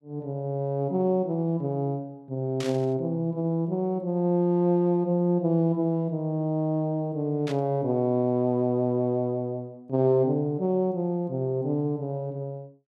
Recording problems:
burst of static; at 2.5 s and at 7.5 s; peak -7 dB vs average level

